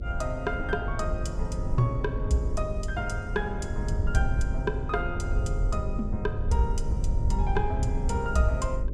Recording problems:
hum; 50 Hz, harmonics up to 600 Hz, SNR 7 dB
rumble; below 78 Hz, SNR 1 dB

